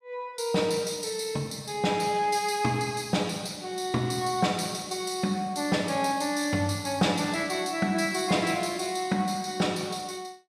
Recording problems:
none

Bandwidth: 14.5 kHz